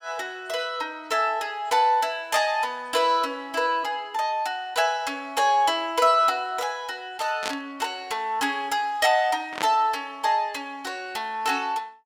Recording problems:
static burst; at 7.5 s and at 9.5 s; peak 0 dB vs average level

